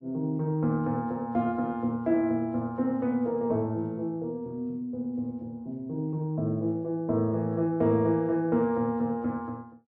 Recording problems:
none

